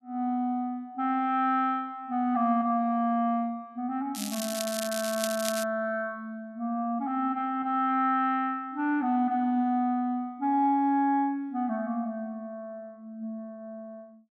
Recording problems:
crackle; from 4 to 5.5 s; loose cable, SNR 7 dB

